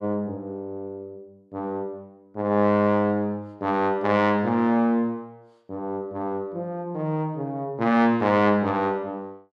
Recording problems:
none

